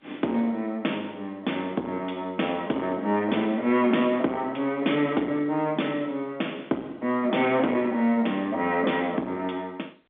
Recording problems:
phone line; 220 Hz to 3.6 kHz, G.711
distortion; soft clipping, signal-to-distortion ratio 12 dB

